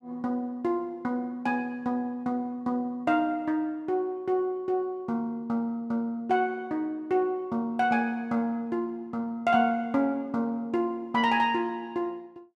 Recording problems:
none

